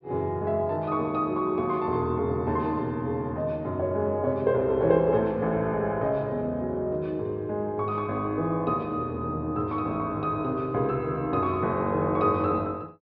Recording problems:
treble missing; nothing above 5.5 kHz

